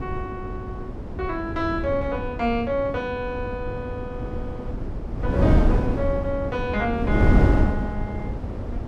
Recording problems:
wind on the microphone; below 260 Hz, SNR -2 dB

